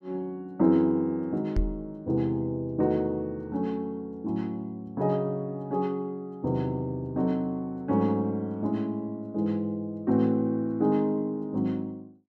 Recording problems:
microphone thump; at 1.5 s; peak +3 dB vs average level

